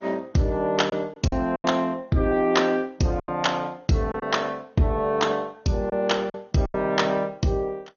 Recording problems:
lossy compression; Opus, then MP2, log-spectral distance 3 dB, nothing above 6.7 kHz
lost packets; 6% of the sound replaced, filled with silence

